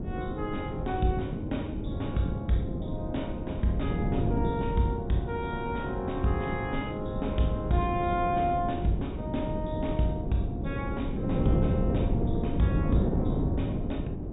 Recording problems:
low-pass filter; nothing above 4 kHz
wind on the microphone; below 280 Hz, SNR 0 dB

